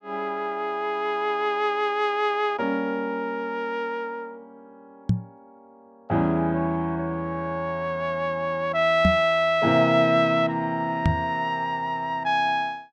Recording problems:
microphone thump; at 5 s, at 9 s and at 11 s; peak +6 dB vs average level

